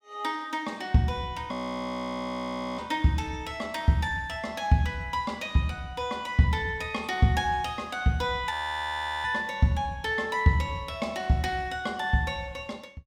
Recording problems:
frozen audio; at 1.5 s for 1.5 s and at 8.5 s for 0.5 s

